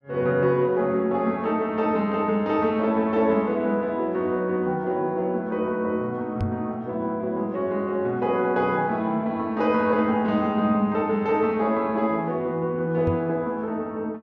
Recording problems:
knock on the microphone; at 6.5 s and at 13 s; peak -1 dB vs average level

